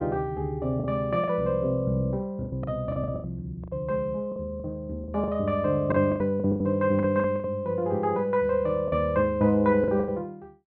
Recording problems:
packet loss; 11% of the sound replaced, filled with the last packet

